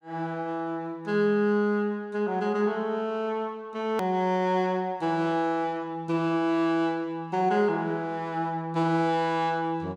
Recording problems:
click at an edit; at 4 s

